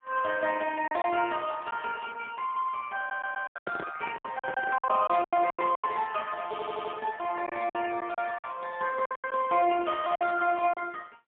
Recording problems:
phone line; 260 Hz to 3.1 kHz, AMR-NB, then MP3
packet loss; 10% of the sound replaced, filled with silence
stutter; at 3 s and at 6.5 s
microphone handling noise; from 3 to 5 s; peak -5 dB vs average level

